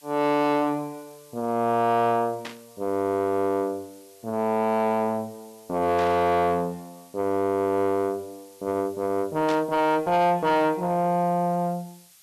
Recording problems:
distorted audio; soft clipping, signal-to-distortion ratio 7 dB
hiss; slope +3 dB per octave, SNR 27 dB
static burst; at 2.5 s, at 6 s and at 9.5 s; peak -7 dB vs average level

